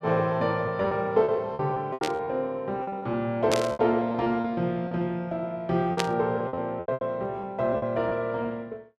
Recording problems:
lost packets; 12% of the sound replaced, filled with repeated pitch periods
burst of static; at 2 s, at 3.5 s and at 6 s; peak +3 dB vs average level

